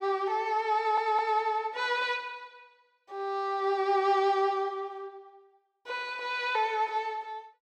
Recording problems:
stutter; at 1 s

